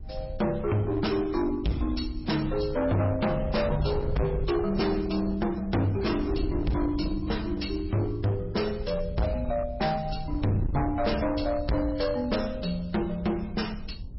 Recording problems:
codec artefacts; MP3, log-spectral distance 4 dB, nothing above 5.5 kHz
distorted audio; hard clipping, uneven, signal-to-distortion ratio 6 dB
wind noise; below 110 Hz, SNR 9 dB

